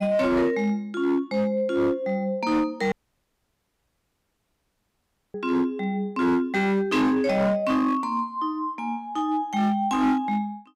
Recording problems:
distortion; hard clipping, signal-to-distortion ratio 11 dB
dropout; at 3 s for 2.5 s

